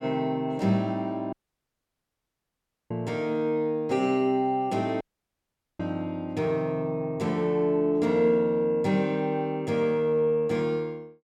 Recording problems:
audio cutting out; at 1.5 s for 1.5 s and at 5 s for 1 s

